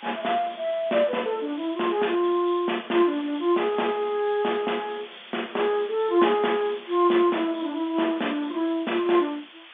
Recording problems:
phone line; 190 Hz to 3.5 kHz, G.711
hiss; SNR 20 dB

